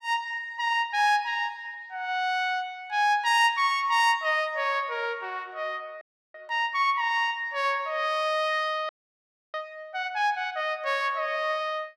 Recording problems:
audio freezing; at 6 s and at 9 s for 0.5 s

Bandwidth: 16.5 kHz